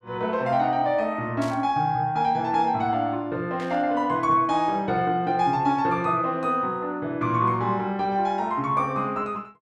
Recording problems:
burst of static; at 1.5 s and at 3.5 s; peak -12 dB vs average level

